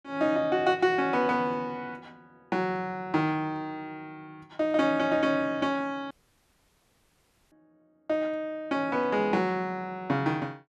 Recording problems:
audio cutting out; at 6 s for 1.5 s

